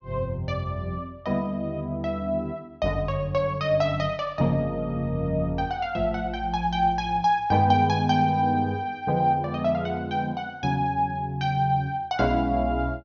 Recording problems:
treble cut off; nothing above 6.6 kHz

